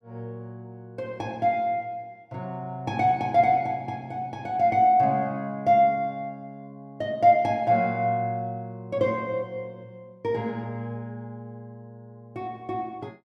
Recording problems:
none

